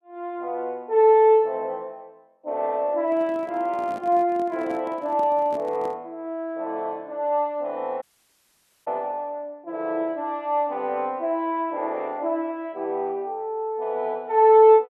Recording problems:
handling noise; from 3 to 6 s; peak -11 dB vs average level
audio cutting out; at 8 s for 1 s

